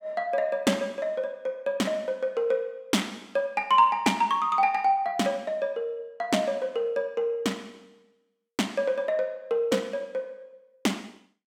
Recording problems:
none

